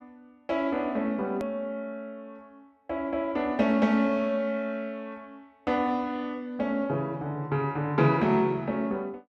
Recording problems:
hard cut with a click; at 1.5 s

